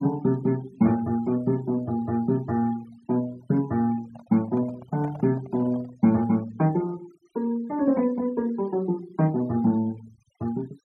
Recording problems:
noise reduction artefacts; signal-to-artefact ratio 24 dB
microphone handling noise; from 4 to 6 s; peak -11 dB vs average level

